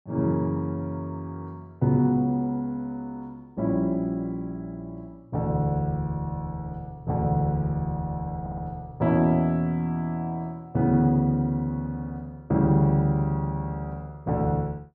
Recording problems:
audio stuttering; at 8.5 s

